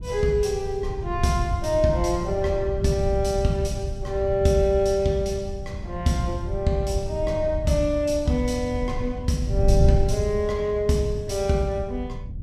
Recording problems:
wind noise; below 110 Hz, SNR 6 dB

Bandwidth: 15.5 kHz